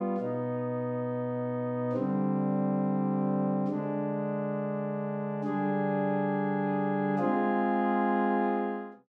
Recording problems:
none

